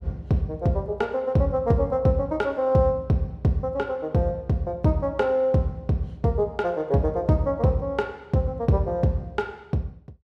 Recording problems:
none

